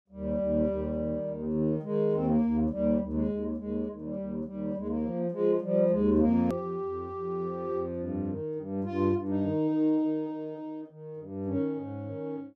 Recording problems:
click at an edit; at 6.5 s

